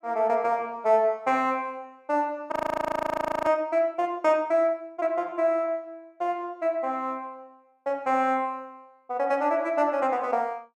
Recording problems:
frozen audio; at 2.5 s for 1 s

